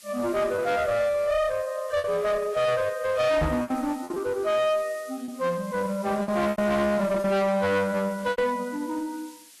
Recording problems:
codec artefacts; Vorbis, log-spectral distance 4 dB, nothing above 13.1 kHz
distorted audio; hard clipping, uneven, signal-to-distortion ratio 7 dB
hiss; SNR 23 dB
packet loss; 6% of the sound replaced, filled with repeated pitch periods
microphone thump; at 3.5 s; peak +3 dB vs average level

